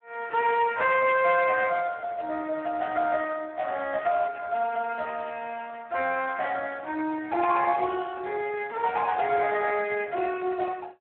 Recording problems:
phone line; 320 Hz to 3 kHz, Speex

